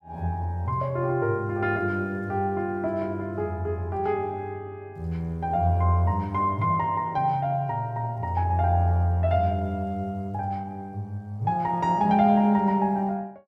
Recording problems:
none

